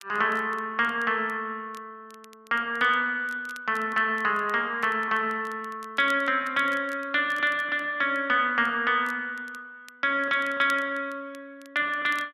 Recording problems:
crackling; vinyl, SNR 27 dB

